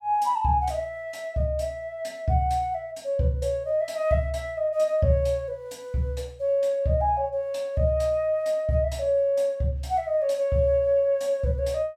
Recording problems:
none

